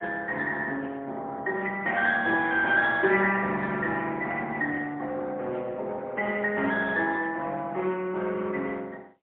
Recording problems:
telephone audio; 220 Hz to 3.3 kHz, AMR-NB, then MP3

